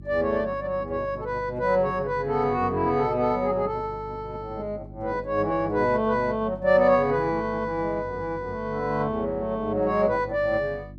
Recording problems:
electrical hum; 50 Hz, harmonics up to 350 Hz, SNR 17 dB

